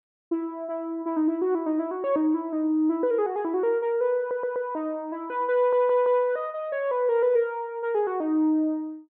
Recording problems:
treble missing; nothing above 4 kHz
audio stuttering; at 4 s and at 5.5 s

